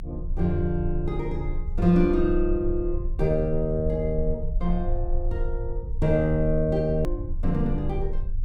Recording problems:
low-frequency rumble; below 50 Hz, strongest tone 24 Hz, SNR 6 dB
click at an edit; at 7 s

